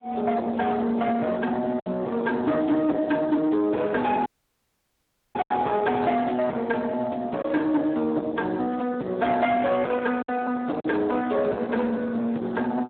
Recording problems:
telephone audio; 190 Hz to 3.7 kHz, Speex
distortion; soft clipping, signal-to-distortion ratio 9 dB
packet loss; 2% of the sound replaced, filled with silence
audio cutting out; at 4.5 s for 1 s

